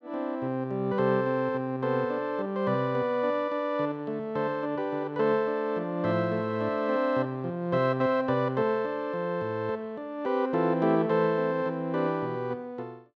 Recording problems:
none

